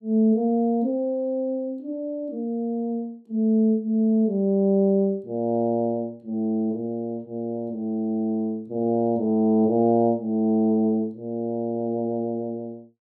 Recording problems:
none

